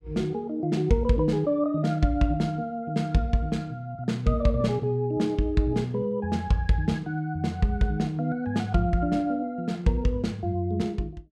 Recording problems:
none

